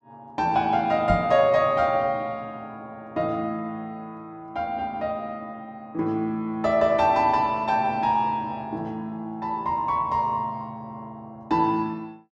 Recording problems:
microphone bump; at 1 s; peak +2 dB vs average level

